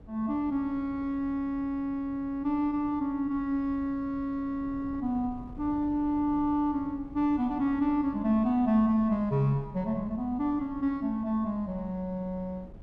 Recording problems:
wind noise; below 210 Hz, SNR 19 dB

